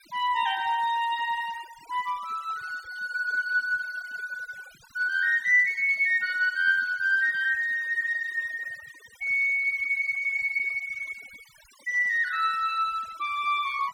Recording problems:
noise reduction artefacts; signal-to-artefact ratio 25 dB

